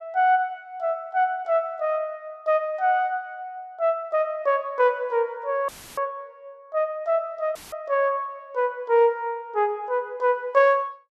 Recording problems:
audio cutting out; at 5.5 s and at 7.5 s; filled with static

